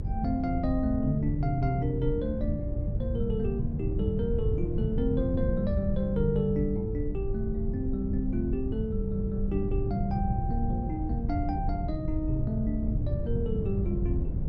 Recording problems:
rumble; below 66 Hz, SNR 8 dB
wind noise; below 140 Hz, SNR 2 dB

